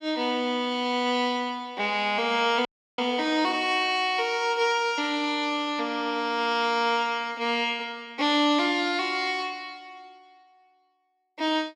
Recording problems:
frozen audio; at 2.5 s

